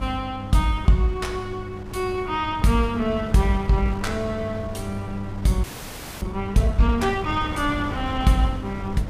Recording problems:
electrical hum; 50 Hz, harmonics up to 800 Hz, SNR 13 dB
wind on the microphone; below 260 Hz, SNR 12 dB
frozen audio; at 5.5 s for 0.5 s

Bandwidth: 15 kHz